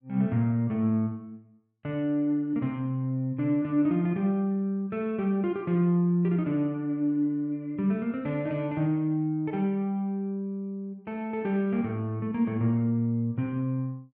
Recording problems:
none

